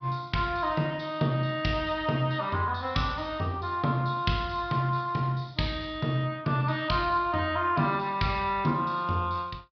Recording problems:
treble cut off; nothing above 5.2 kHz
codec artefacts; MP2, log-spectral distance 2 dB

